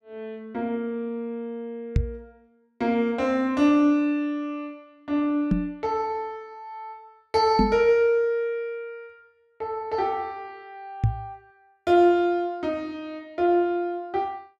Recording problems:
microphone thump; 4 times, first at 2 s; peak +6 dB vs average level

